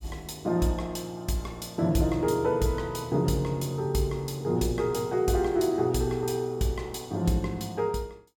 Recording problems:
none

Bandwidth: 17 kHz